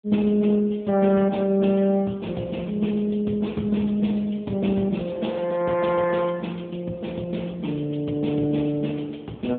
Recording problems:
phone line; 110 Hz to 3.6 kHz, AMR-NB

